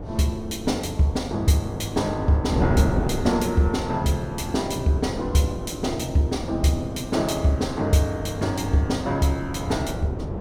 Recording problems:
wind on the microphone; below 370 Hz, SNR 7 dB

